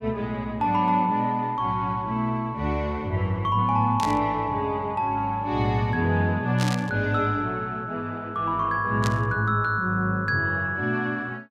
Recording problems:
burst of static; at 4 s, at 6.5 s and at 9 s; peak -2 dB vs average level

